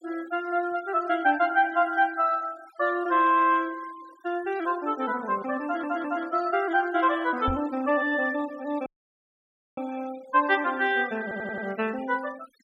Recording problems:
denoising artefacts; signal-to-artefact ratio 21 dB
audio stuttering; at 5.5 s and at 11 s
microphone bump; at 7.5 s; peak -3 dB vs average level
audio cutting out; at 9 s for 1 s

